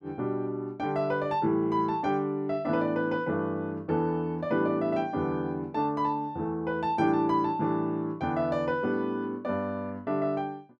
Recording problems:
none

